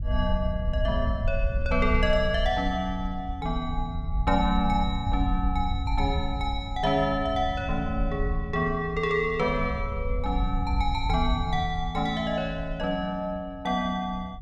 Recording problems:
wind on the microphone; below 74 Hz, SNR 4 dB

